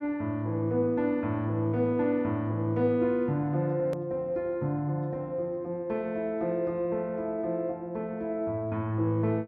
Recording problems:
edit click; at 4 s

